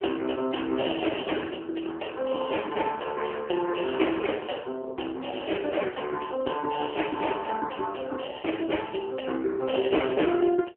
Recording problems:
telephone audio; 260 Hz to 3.1 kHz, AMR-NB

